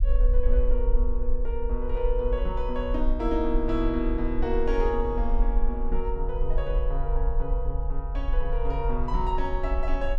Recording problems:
low-frequency rumble; below 44 Hz, SNR -1 dB

